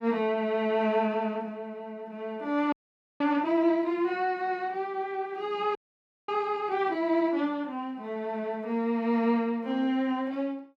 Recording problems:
frozen audio; at 2.5 s and at 6 s for 0.5 s

